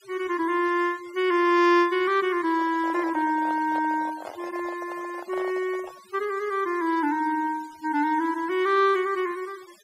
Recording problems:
noise reduction artefacts; signal-to-artefact ratio 23 dB
microphone handling noise; from 2.5 to 6 s; peak -9 dB vs average level

